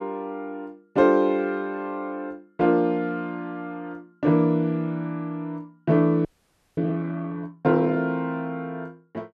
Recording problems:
audio freezing; at 6.5 s for 0.5 s

